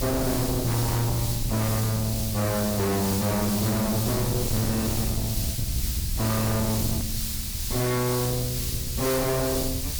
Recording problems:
distortion; soft clipping, signal-to-distortion ratio 5 dB
hum; 60 Hz, harmonics up to 1 kHz, SNR 25 dB
hiss; SNR 4 dB
rumble; below 180 Hz, SNR 6 dB
edit click; at 7 s

